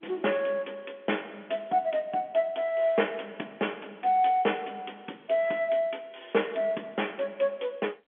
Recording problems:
phone line; 240 Hz to 3.4 kHz, G.711

